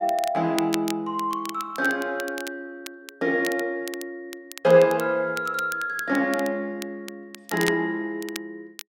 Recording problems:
crackling; vinyl, SNR 14 dB

